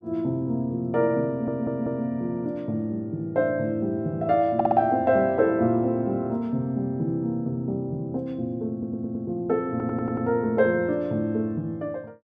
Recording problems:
audio stuttering; 4 times, first at 1.5 s

